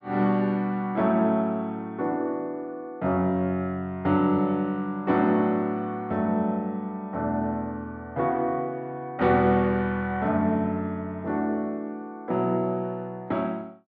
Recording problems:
none

